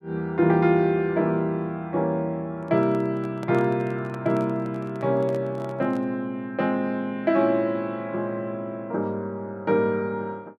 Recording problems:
handling noise; from 2.5 to 6 s; peak -9 dB vs average level

